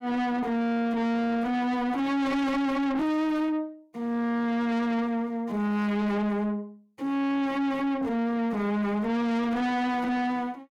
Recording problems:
distortion; soft clipping, signal-to-distortion ratio 6 dB

